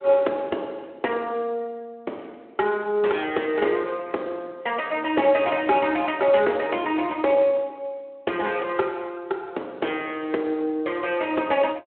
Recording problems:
phone line; 280 Hz to 3.4 kHz, Speex

